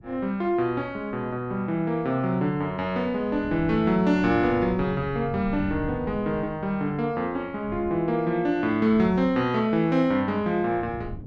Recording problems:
wind noise; below 180 Hz, SNR 15 dB

